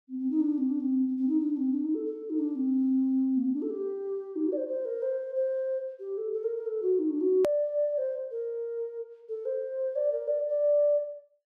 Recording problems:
hard cut with a click; at 7.5 s

